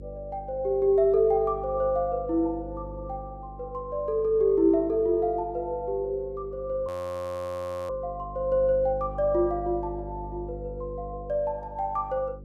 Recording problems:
hum; 50 Hz, harmonics up to 550 Hz, SNR 15 dB
audio freezing; at 7 s for 1 s

